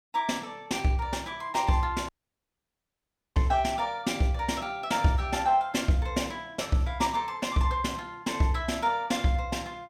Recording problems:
audio cutting out; at 2 s for 1.5 s

